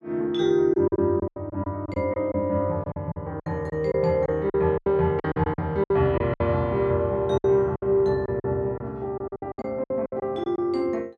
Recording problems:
lost packets; 14% of the sound replaced, filled with silence

